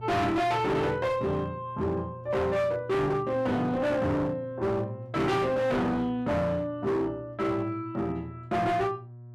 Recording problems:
distortion; hard clipping, uneven, signal-to-distortion ratio 7 dB
electrical hum; 60 Hz, harmonics up to 720 Hz, SNR 16 dB

